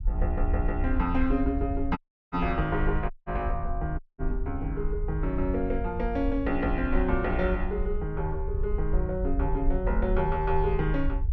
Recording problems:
rumble; below 62 Hz, SNR 2 dB
dropout; at 2 s, at 3 s and at 4 s

